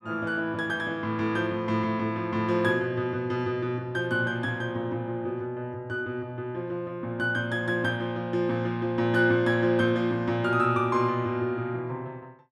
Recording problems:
none

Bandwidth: 13 kHz